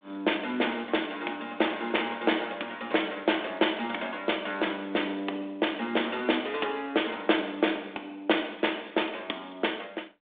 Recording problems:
phone line; 240 Hz to 3.6 kHz, G.726

